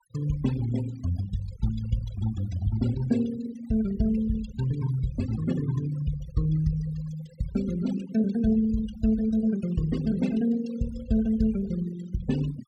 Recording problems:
noise reduction artefacts; signal-to-artefact ratio 15 dB

